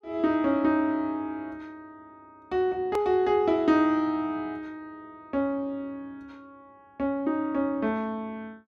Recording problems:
edit click; at 3 s

